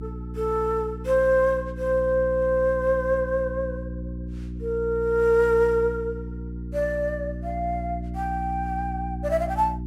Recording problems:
electrical hum; 60 Hz, harmonics up to 360 Hz, SNR 9 dB

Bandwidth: 16 kHz